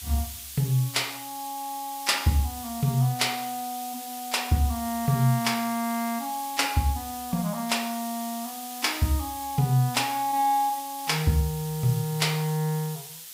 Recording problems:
background hiss; SNR 11 dB

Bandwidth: 15.5 kHz